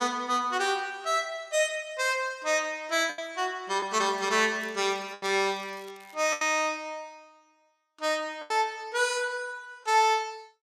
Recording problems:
lost packets; 4% of the sound replaced, filled with the last packet
crackling; from 4 to 6 s; loose cable, SNR 27 dB

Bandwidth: 14.5 kHz